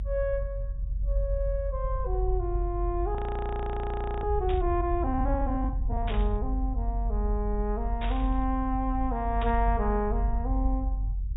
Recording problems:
treble cut off; nothing above 4 kHz
rumble; below 58 Hz, strongest tone 46 Hz, SNR 0 dB
audio freezing; at 3 s for 1 s
static burst; 4 times, first at 4.5 s; peak -3 dB vs average level

